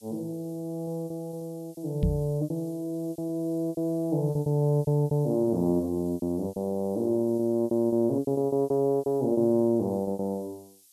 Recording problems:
background hiss; SNR 27 dB
lost packets; 15% of the sound replaced, filled with repeated pitch periods
knock on the microphone; at 2 s; peak +4 dB vs average level

